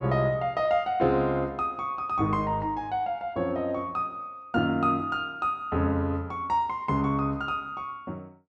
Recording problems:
none

